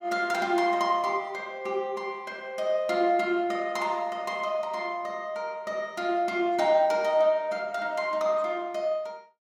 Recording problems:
none

